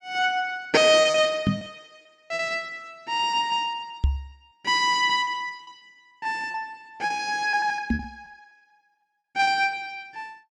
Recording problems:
lost packets; 14% of the sound replaced, filled with repeated pitch periods
knock on the microphone; at 1.5 s, at 4 s and at 8 s; peak +5 dB vs average level

